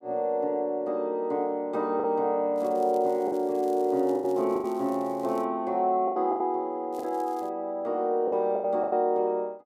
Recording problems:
packet loss; 7% of the sound replaced, filled with the last packet
crackle; from 2.5 to 5.5 s and at 7 s; loose cable, SNR 28 dB

